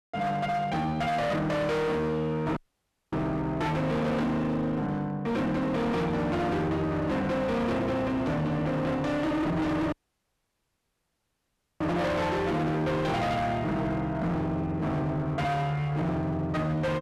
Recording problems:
distortion; hard clipping, uneven, signal-to-distortion ratio 6 dB
dropout; at 2.5 s for 0.5 s and at 10 s for 2 s

